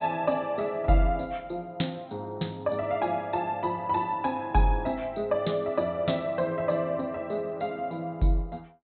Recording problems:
low-pass filter; nothing above 4 kHz

